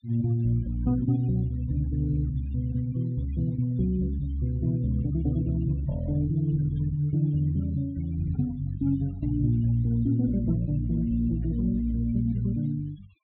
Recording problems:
treble missing; nothing above 4 kHz
denoising artefacts; signal-to-artefact ratio 24 dB

